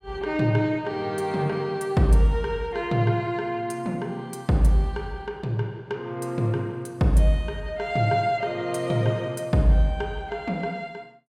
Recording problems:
none

